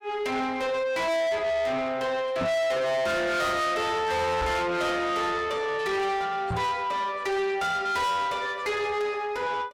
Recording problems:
distortion; soft clipping, signal-to-distortion ratio 6 dB
knock on the microphone; at 2.5 s, at 4.5 s and at 6.5 s; peak 0 dB vs average level

